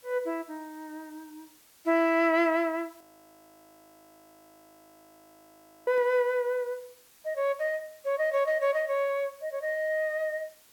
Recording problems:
background hiss; slope 0 dB per octave, SNR 28 dB
audio freezing; at 3 s for 3 s
microphone handling noise; at 6 s; peak -18 dB vs average level

